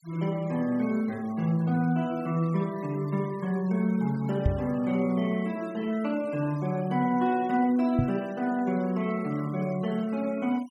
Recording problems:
noise reduction artefacts; signal-to-artefact ratio 23 dB
microphone thump; at 4.5 s and at 8 s; peak +6 dB vs average level

